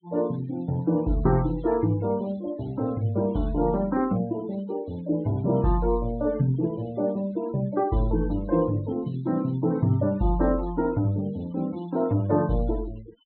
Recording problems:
low-pass filter; nothing above 4 kHz
denoising artefacts; signal-to-artefact ratio 23 dB

